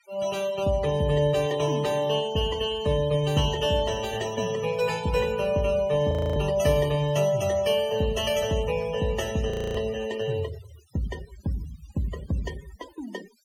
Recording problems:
denoising artefacts; signal-to-artefact ratio 17 dB
frozen audio; at 6 s and at 9.5 s

